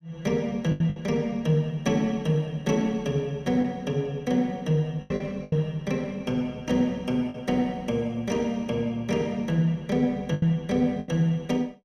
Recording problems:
lost packets; 5% of the sound replaced, filled with the last packet

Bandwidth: 15 kHz